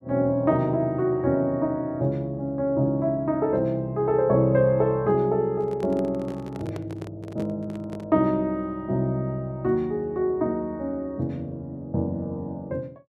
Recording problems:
microphone handling noise; from 5.5 to 8 s; peak -8 dB vs average level

